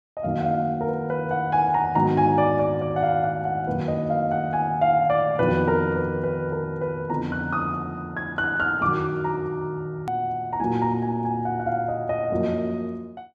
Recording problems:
edit click; at 10 s

